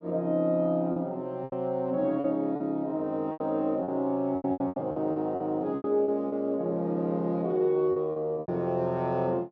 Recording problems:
lost packets; 11% of the sound replaced, filled with repeated pitch periods

